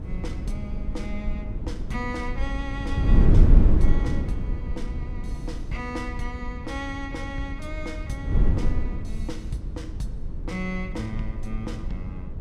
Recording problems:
low-frequency rumble; below 100 Hz, SNR 9 dB
wind noise; below 86 Hz, SNR -7 dB

